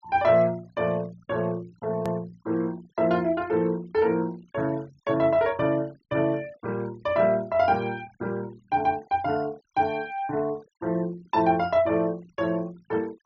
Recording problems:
treble cut off; nothing above 7.1 kHz
denoising artefacts; signal-to-artefact ratio 25 dB
edit click; at 2 s

